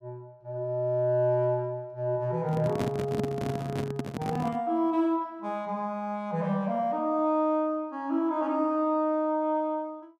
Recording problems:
microphone handling noise; from 2.5 to 4.5 s; peak +2 dB vs average level

